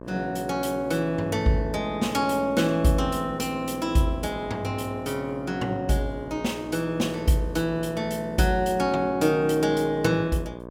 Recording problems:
electrical hum; 60 Hz, harmonics up to 1.7 kHz, SNR 14 dB

